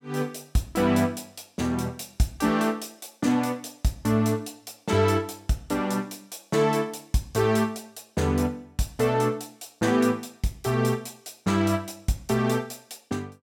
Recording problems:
none

